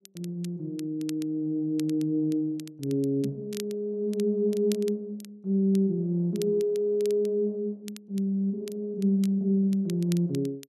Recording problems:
crackle; vinyl, SNR 21 dB

